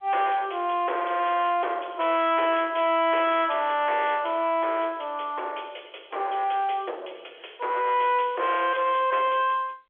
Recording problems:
telephone audio; 340 Hz to 3.4 kHz, G.711
distortion; soft clipping, signal-to-distortion ratio 8 dB

